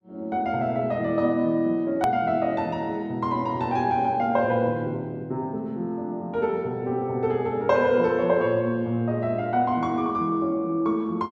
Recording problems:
edit click; at 2 s

